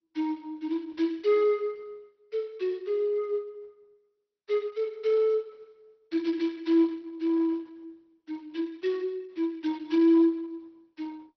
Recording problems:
low-pass filter; nothing above 5.7 kHz
codec artefacts; Opus, log-spectral distance 2 dB

